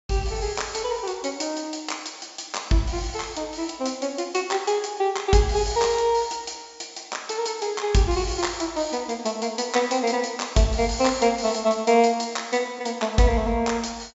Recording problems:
treble missing; nothing above 8 kHz

